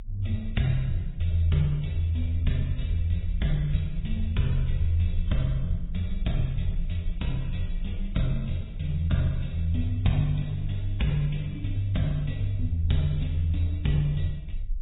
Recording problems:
lossy compression; AAC, then MP3, log-spectral distance 3 dB, nothing above 3.8 kHz
low-frequency rumble; below 46 Hz, strongest tone 28 Hz, SNR 9 dB

